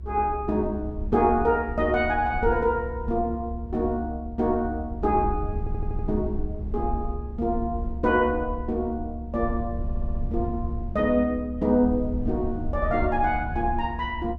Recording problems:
rumble; below 72 Hz, SNR 8 dB
stutter; at 5.5 s and at 10 s

